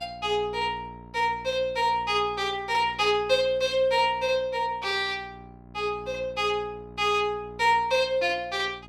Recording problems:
electrical hum; 60 Hz, harmonics up to 1.3 kHz, SNR 22 dB

